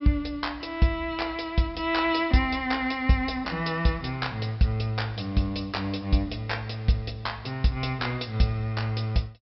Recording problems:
low-pass filter; nothing above 5.4 kHz

